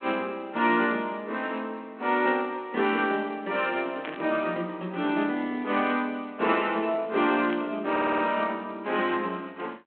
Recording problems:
telephone audio; 240 Hz to 3.5 kHz, G.726
burst of static; at 4 s and at 7.5 s; peak -7 dB vs average level
stutter; at 8 s

